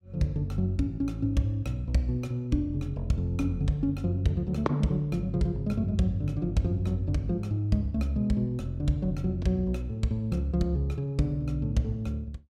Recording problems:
none

